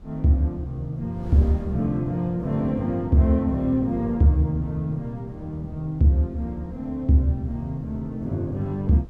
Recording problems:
wind noise; below 90 Hz, SNR 21 dB

